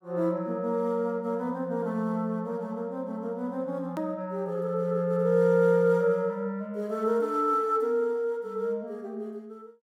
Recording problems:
edit click; at 4 s

